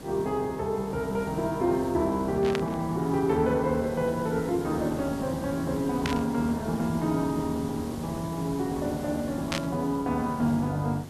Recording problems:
background hiss; SNR 11 dB
burst of static; at 2.5 s, at 6 s and at 9.5 s; peak +2 dB vs average level

